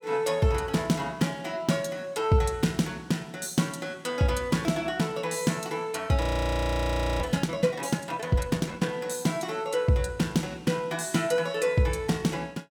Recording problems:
audio freezing; at 6 s for 1 s

